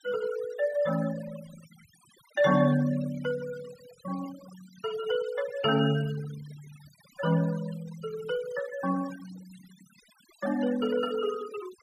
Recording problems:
noise reduction artefacts; signal-to-artefact ratio 17 dB

